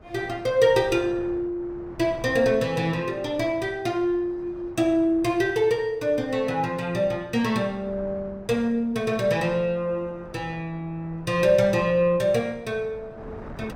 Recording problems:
wind on the microphone; below 660 Hz, SNR 21 dB

